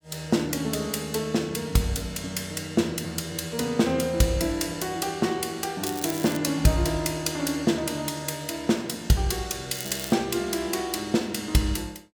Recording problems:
crackle; at 6 s and at 10 s; loose cable, SNR 10 dB

